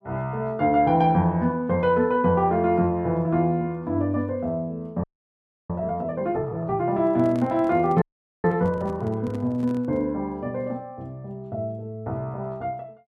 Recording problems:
audio freezing; at 5 s for 0.5 s and at 8 s
handling noise; from 7 to 10 s; peak -9 dB vs average level

